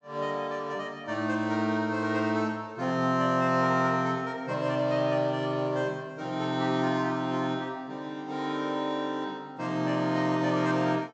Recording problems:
treble cut off; nothing above 8 kHz

